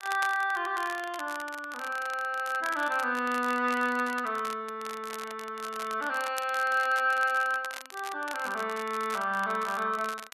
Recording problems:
crackle; vinyl, SNR 14 dB

